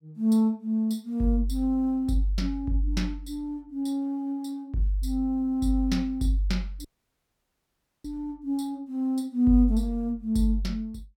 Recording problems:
dropout; at 7 s for 1 s

